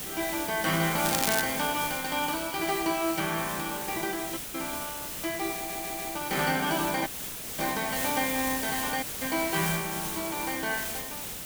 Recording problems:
background hiss; slope -2 dB per octave, SNR 3 dB
crackle; at 1 s; loose cable, SNR 0 dB
dropout; at 4.5 s, at 7 s for 0.5 s and at 9 s
audio stuttering; at 5.5 s

